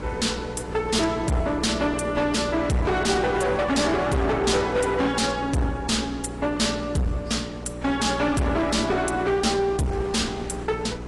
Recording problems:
lossy compression; AAC, log-spectral distance 4 dB, nothing above 10.7 kHz
distortion; hard clipping, uneven, signal-to-distortion ratio 5 dB
mains hum; 60 Hz, harmonics up to 480 Hz, SNR 13 dB
wind noise; below 1.2 kHz, SNR 18 dB

